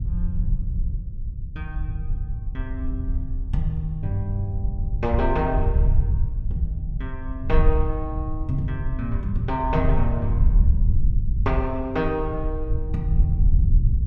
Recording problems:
low-frequency rumble; below 76 Hz, SNR -3 dB

